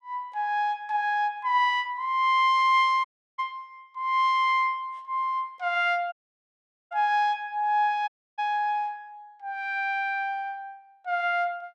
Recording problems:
dropout; at 3 s, at 6 s for 1 s and at 8 s

